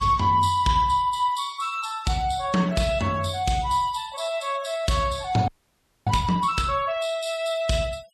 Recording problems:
noise reduction artefacts; signal-to-artefact ratio 22 dB
frozen audio; at 5.5 s for 0.5 s

